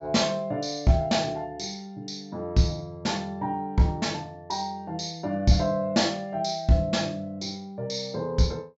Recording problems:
treble cut off; nothing above 8 kHz

